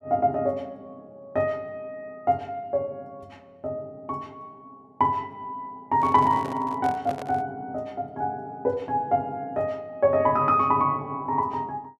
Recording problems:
microphone handling noise; from 6 to 7.5 s; peak -6 dB vs average level

